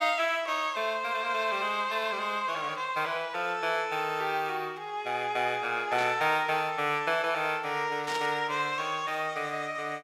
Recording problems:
burst of static; at 6 s and at 8 s; peak -4 dB vs average level

